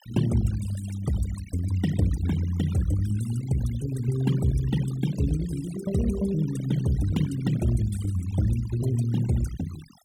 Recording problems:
noise reduction artefacts; signal-to-artefact ratio 14 dB

